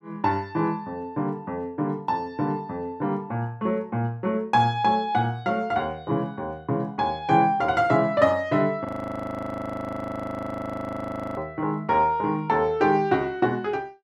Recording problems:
frozen audio; at 9 s for 2.5 s

